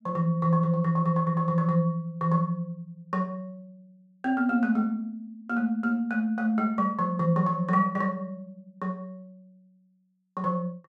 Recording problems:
none

